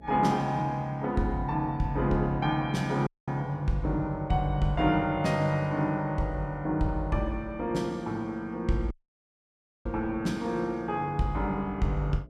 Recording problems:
hum; 60 Hz, harmonics up to 660 Hz, SNR 23 dB
dropout; at 3 s and at 9 s for 1 s

